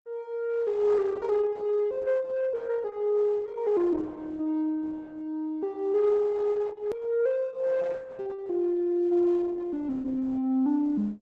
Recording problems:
lossy codec; Opus, log-spectral distance 2 dB
edit click; at 7 s

